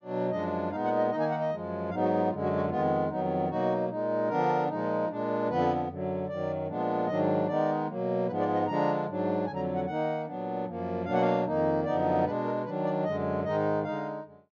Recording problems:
low-pass filter; nothing above 6.9 kHz

